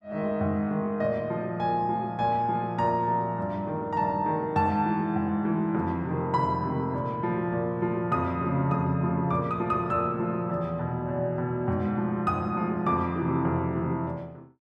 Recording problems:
none

